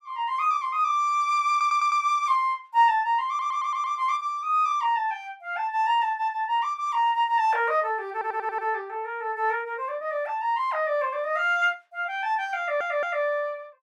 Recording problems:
stutter; 4 times, first at 1.5 s

